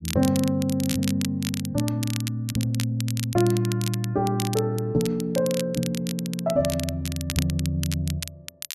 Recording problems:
crackling; vinyl, SNR 9 dB

